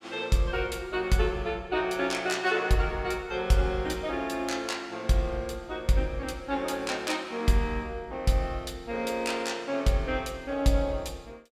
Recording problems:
none

